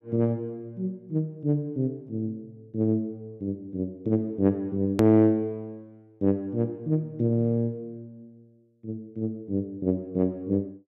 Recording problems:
hard cut with a click; at 5 s

